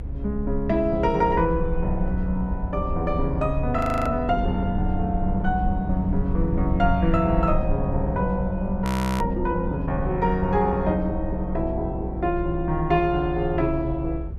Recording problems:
low-frequency rumble; below 68 Hz, SNR 6 dB
audio freezing; at 4 s and at 9 s

